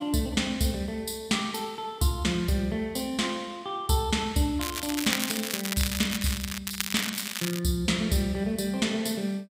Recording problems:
crackling; from 4.5 to 6.5 s and at 6.5 s; loose cable, SNR 3 dB

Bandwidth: 15.5 kHz